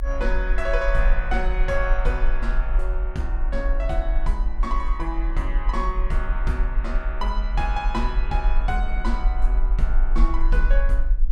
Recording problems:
low-frequency rumble; below 44 Hz, SNR -4 dB
wind on the microphone; below 390 Hz, SNR 18 dB

